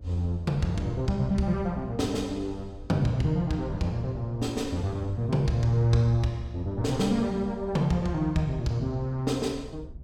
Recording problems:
rumble; below 88 Hz, SNR 17 dB

